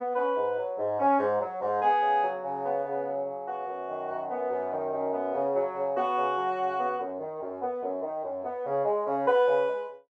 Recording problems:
none

